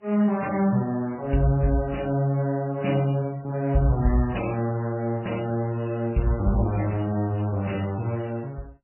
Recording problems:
codec artefacts; MP3, then AAC, log-spectral distance 4 dB, nothing above 2.9 kHz

